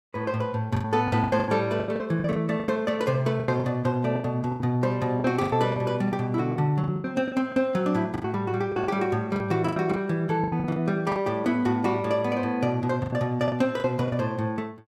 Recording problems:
lost packets; 14% of the sound replaced, filled with the last packet

